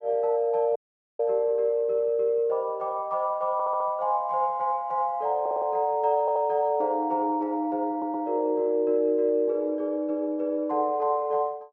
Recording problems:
dropout; at 1 s
audio stuttering; 4 times, first at 3.5 s

